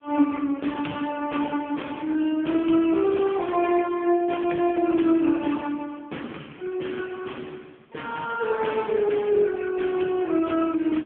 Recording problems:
telephone audio; 170 Hz to 3.4 kHz, AMR-NB

